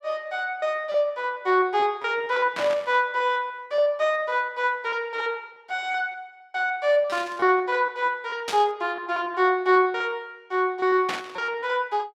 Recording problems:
lost packets; 12% of the sound replaced, filled with repeated pitch periods
burst of static; 4 times, first at 2.5 s; peak -1 dB vs average level

